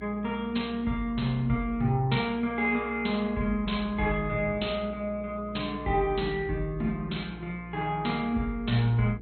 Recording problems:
lossy compression; MP2, log-spectral distance 2 dB, nothing above 4.2 kHz
electrical hum; 60 Hz, harmonics up to 480 Hz, SNR 17 dB

